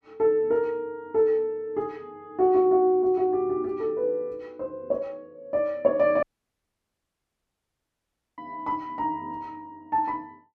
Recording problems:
audio cutting out; at 6 s for 2 s

